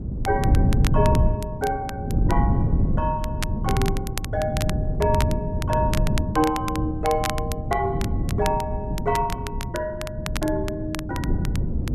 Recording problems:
wind noise; below 170 Hz, SNR -2 dB
crackle; vinyl, SNR 9 dB

